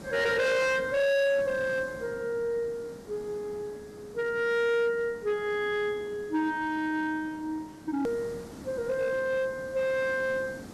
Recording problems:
distortion; hard clipping, signal-to-distortion ratio 8 dB
background hiss; SNR 17 dB
edit click; at 8 s

